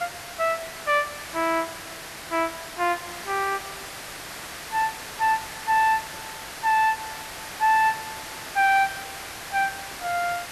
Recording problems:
background hiss; SNR 11 dB

